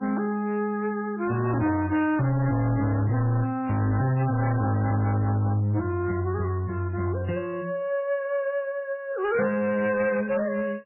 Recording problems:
lossy compression; MP3, log-spectral distance 2 dB, nothing above 2.4 kHz
distorted audio; hard clipping, signal-to-distortion ratio 11 dB

